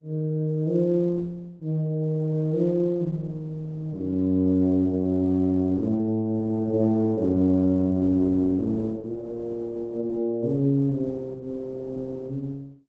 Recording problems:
lossy codec; MP3, then Opus, log-spectral distance 2 dB

